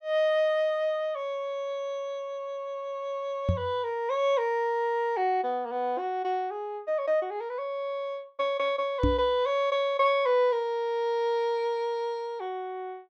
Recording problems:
microphone bump; at 3.5 s and at 9 s; peak +5 dB vs average level

